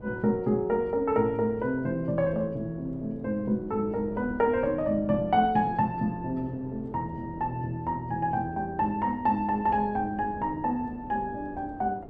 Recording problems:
wind noise; below 430 Hz, SNR 16 dB

